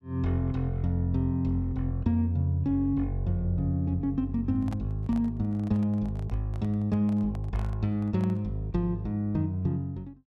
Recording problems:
handling noise; from 4.5 to 8.5 s; peak -10 dB vs average level

